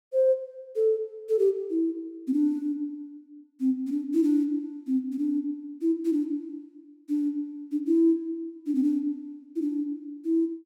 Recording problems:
none

